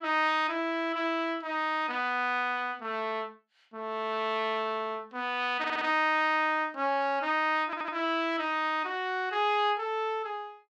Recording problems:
audio stuttering; at 5.5 s and at 7.5 s

